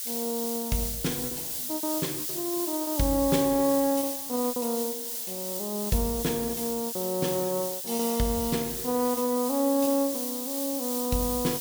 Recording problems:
background hiss; slope +5 dB per octave, SNR 3 dB
lost packets; 6% of the sound replaced, filled with repeated pitch periods

